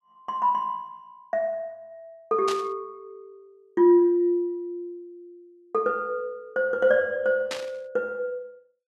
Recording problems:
burst of static; at 2.5 s and at 7.5 s; peak -3 dB vs average level

